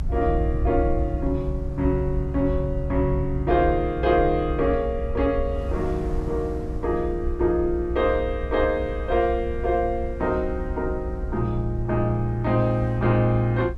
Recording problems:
rumble; below 68 Hz, SNR 7 dB
wind noise; below 620 Hz, SNR 22 dB

